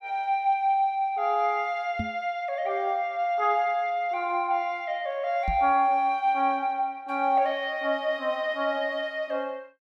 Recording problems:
microphone thump; at 2 s and at 5.5 s; peak -2 dB vs average level

